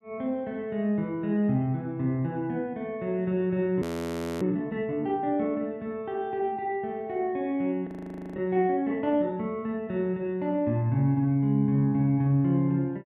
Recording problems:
audio freezing; at 4 s for 0.5 s and at 8 s

